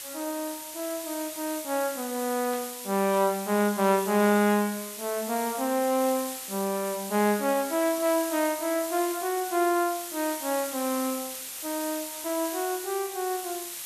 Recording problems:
hiss; slope +2 dB per octave, SNR 8 dB
static burst; at 2.5 s; peak -14 dB vs average level

